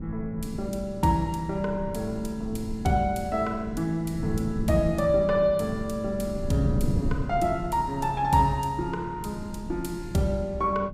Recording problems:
wind on the microphone; below 200 Hz, SNR 9 dB

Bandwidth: 15.5 kHz